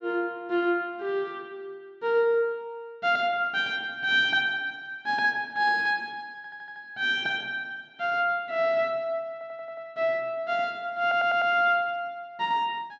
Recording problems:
stutter; at 6.5 s, at 9.5 s and at 11 s

